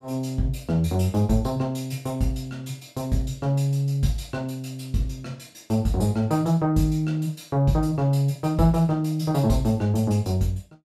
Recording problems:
none

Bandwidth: 15.5 kHz